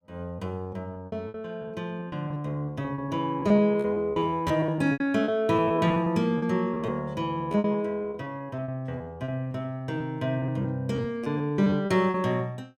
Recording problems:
lost packets; 16% of the sound replaced, filled with repeated pitch periods

